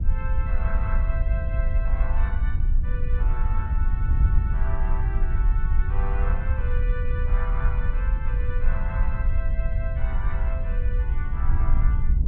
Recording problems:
low-frequency rumble; below 54 Hz, SNR 0 dB
wind on the microphone; below 62 Hz, SNR -12 dB

